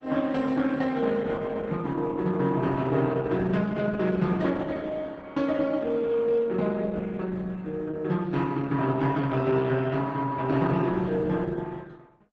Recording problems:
lossy compression; Opus, log-spectral distance 3 dB, nothing above 7.8 kHz

